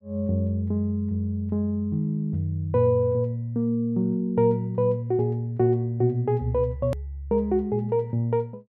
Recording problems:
hard cut with a click; at 7 s

